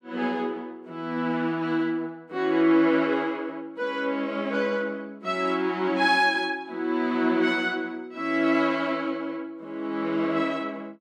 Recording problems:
none

